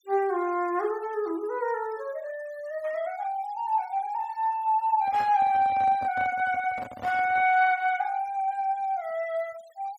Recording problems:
noise reduction artefacts; signal-to-artefact ratio 26 dB
handling noise; from 5 to 7.5 s; peak -10 dB vs average level

